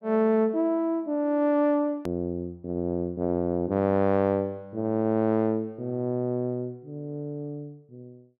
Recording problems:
click at an edit; at 2 s

